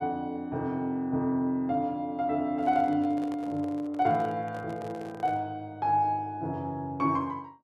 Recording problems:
handling noise; from 2.5 to 5.5 s; peak -11 dB vs average level

